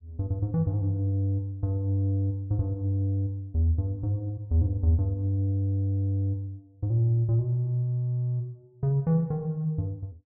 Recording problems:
none

